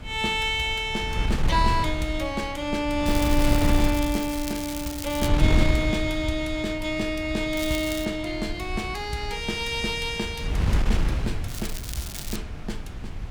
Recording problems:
wind on the microphone; below 110 Hz, SNR 3 dB
crackling; from 3 to 5.5 s, at 7.5 s and at 11 s; loose cable, SNR 9 dB

